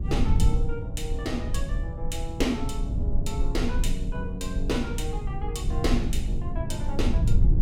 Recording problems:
low-frequency rumble; below 80 Hz, SNR -3 dB

